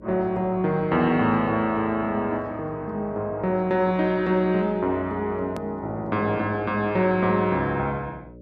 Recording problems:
electrical hum; 60 Hz, harmonics up to 600 Hz, SNR 22 dB
click at an edit; at 5.5 s

